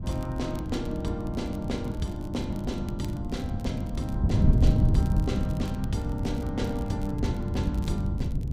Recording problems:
wind on the microphone; below 150 Hz, SNR -3 dB
crackle; vinyl, SNR 22 dB

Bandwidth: 15.5 kHz